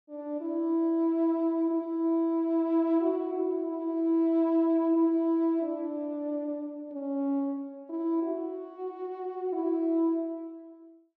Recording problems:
none

